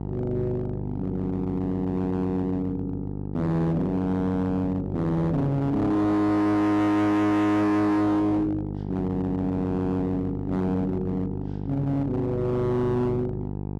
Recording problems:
distorted audio; hard clipping, uneven, signal-to-distortion ratio 6 dB
hum; 50 Hz, harmonics up to 900 Hz, SNR 8 dB

